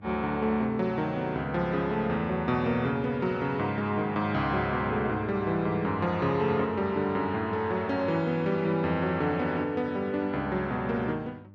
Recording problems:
hum; 50 Hz, harmonics up to 900 Hz, SNR 21 dB

